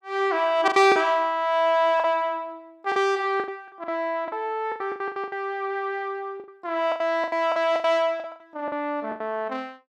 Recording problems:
packet loss; 14% of the sound replaced, filled with the last packet

